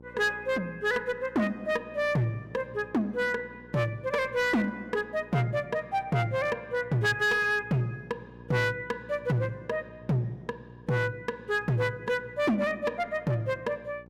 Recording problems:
distortion; hard clipping, signal-to-distortion ratio 12 dB
electrical hum; 60 Hz, harmonics up to 1 kHz, SNR 22 dB

